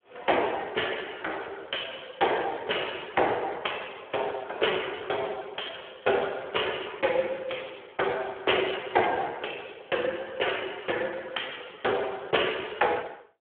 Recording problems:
telephone audio; 340 Hz to 3.4 kHz, Speex

